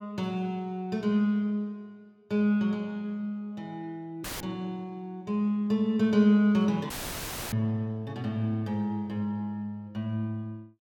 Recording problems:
audio cutting out; at 4 s and at 7 s for 0.5 s; filled with static

